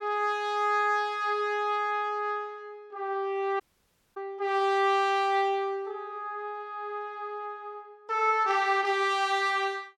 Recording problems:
dropout; at 3.5 s for 0.5 s

